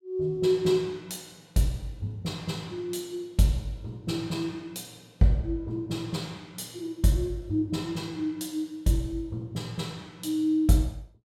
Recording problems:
none

